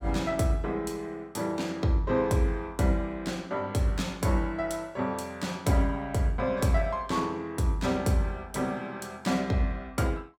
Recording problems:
none

